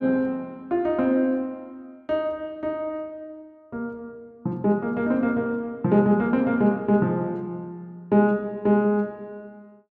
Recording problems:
none

